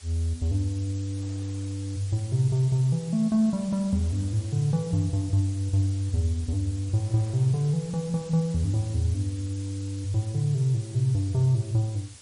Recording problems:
codec artefacts; MP3, log-spectral distance 5 dB, nothing above 13.1 kHz
hiss; slope +3 dB per octave, SNR 20 dB
wind on the microphone; below 1.1 kHz, SNR 32 dB

